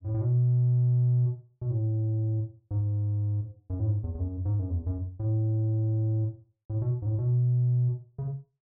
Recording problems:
none

